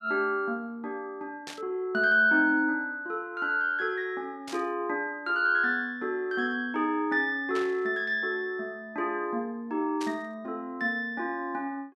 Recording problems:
burst of static; 4 times, first at 1.5 s; peak -7 dB vs average level

